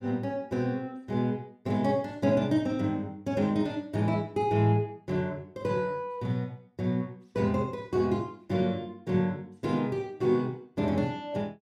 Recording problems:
none

